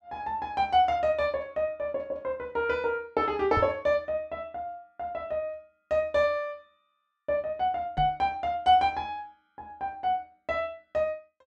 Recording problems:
microphone thump; at 3.5 s and at 8 s; peak -1 dB vs average level

